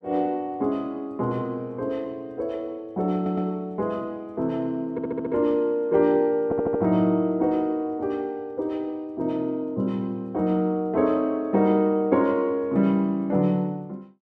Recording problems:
stutter; at 3 s, at 5 s and at 6.5 s

